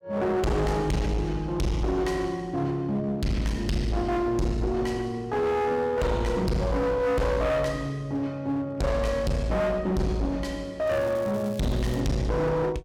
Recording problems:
distortion; hard clipping, uneven, signal-to-distortion ratio 5 dB
crackling; from 11 to 12 s; loose cable, SNR 22 dB

